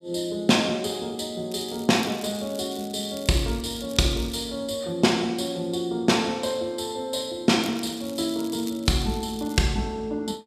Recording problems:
crackle; from 1.5 to 4.5 s and from 7.5 to 9.5 s; loose cable, SNR 18 dB

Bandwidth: 14.5 kHz